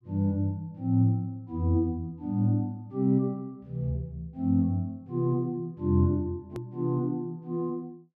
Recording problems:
edit click; at 6.5 s

